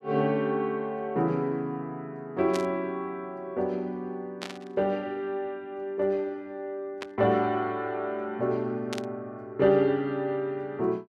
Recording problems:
static burst; 4 times, first at 2.5 s; peak -3 dB vs average level

